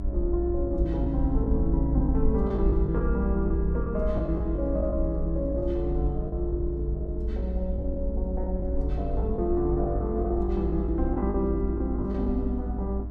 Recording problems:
hum; 50 Hz, harmonics up to 1.4 kHz, SNR 13 dB
low-frequency rumble; below 60 Hz, strongest tone 58 Hz, SNR 1 dB
lost packets; 8% of the sound replaced, filled with the last packet

